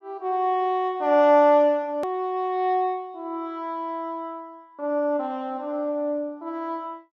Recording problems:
edit click; at 2 s

